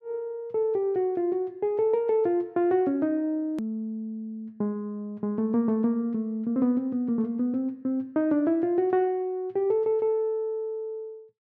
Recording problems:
edit click; at 3.5 s

